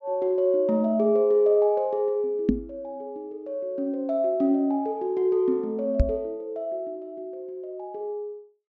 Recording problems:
low-pass filter; nothing above 7.7 kHz
microphone thump; at 2.5 s and at 6 s; peak +7 dB vs average level

